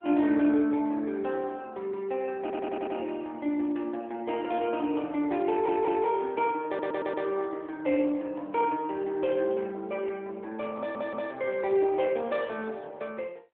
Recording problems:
phone line; 260 Hz to 3.5 kHz, AMR-NB
stutter; 4 times, first at 2.5 s

